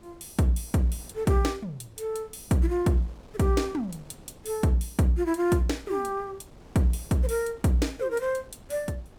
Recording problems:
wind noise; below 520 Hz, SNR 24 dB

